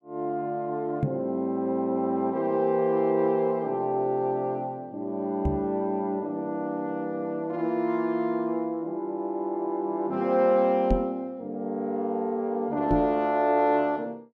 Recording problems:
knock on the microphone; 4 times, first at 1 s; peak +4 dB vs average level

